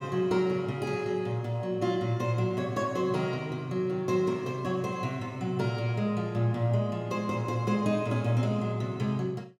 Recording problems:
none

